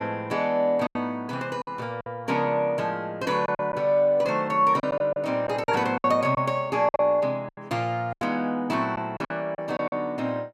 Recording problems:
lost packets; 8% of the sound replaced, filled with silence

